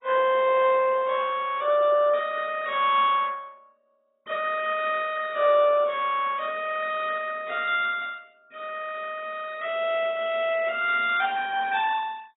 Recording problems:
treble cut off; nothing above 3.6 kHz
codec artefacts; MP2, log-spectral distance 4 dB

